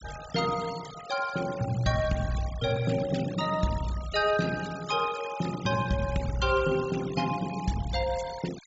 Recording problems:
treble cut off; nothing above 8 kHz
denoising artefacts; signal-to-artefact ratio 15 dB

